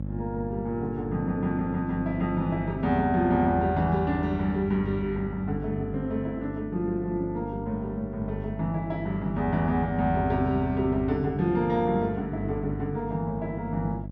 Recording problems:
hum; 50 Hz, harmonics up to 600 Hz, SNR 8 dB

